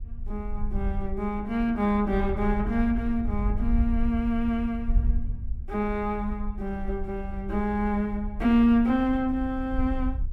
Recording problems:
wind on the microphone; below 62 Hz, SNR 7 dB

